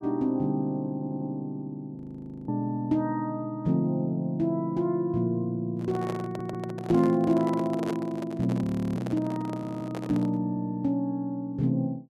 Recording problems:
stutter; at 1 s, at 6.5 s and at 9.5 s
audio freezing; at 2 s for 0.5 s and at 8.5 s
microphone handling noise; from 5.5 to 10 s; peak -3 dB vs average level

